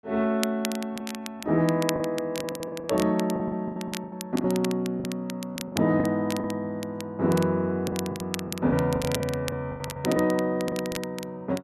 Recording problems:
crackling; vinyl, SNR 11 dB
packet loss; 13% of the sound replaced, filled with the last packet

